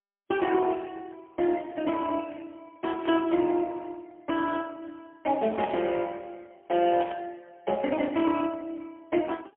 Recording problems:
telephone audio; 240 Hz to 3.3 kHz, AMR-NB, then MP3
burst of static; at 3 s, at 5.5 s and at 7 s; peak -6 dB vs average level

